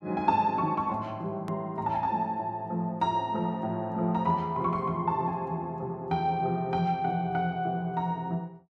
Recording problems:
hard cut with a click; at 1.5 s

